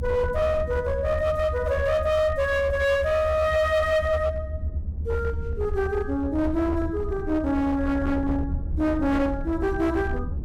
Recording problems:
distortion; hard clipping, signal-to-distortion ratio 12 dB
rumble; below 80 Hz, SNR 7 dB

